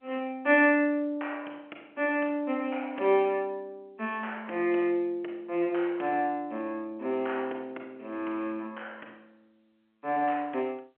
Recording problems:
phone line; 260 Hz to 3.2 kHz, G.711

